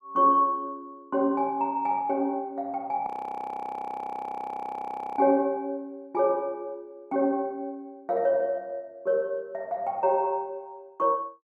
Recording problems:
audio freezing; at 3 s for 2 s

